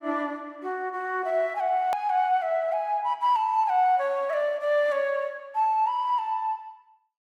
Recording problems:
click at an edit; at 2 s

